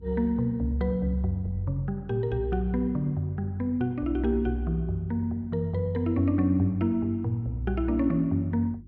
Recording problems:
hum; 50 Hz, harmonics up to 350 Hz, SNR 23 dB

